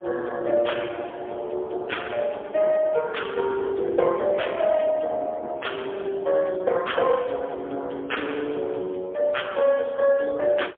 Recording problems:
telephone audio; 280 Hz to 3.4 kHz, AMR-NB, then MP3

